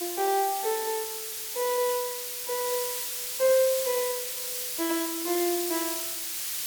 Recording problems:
background hiss; slope +3 dB per octave, SNR 2 dB

